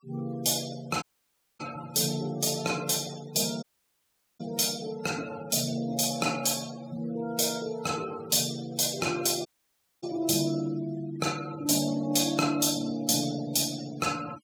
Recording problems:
denoising artefacts; signal-to-artefact ratio 18 dB
dropout; at 1 s for 0.5 s, at 3.5 s for 1 s and at 9.5 s for 0.5 s

